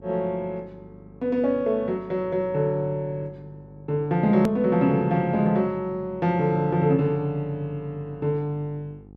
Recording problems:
electrical hum; 50 Hz, harmonics up to 900 Hz, SNR 23 dB
edit click; at 4.5 s

